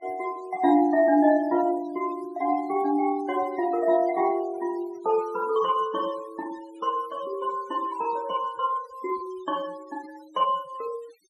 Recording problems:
denoising artefacts; signal-to-artefact ratio 21 dB

